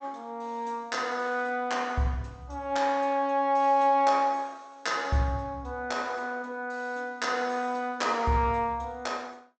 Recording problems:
treble cut off; nothing above 8 kHz

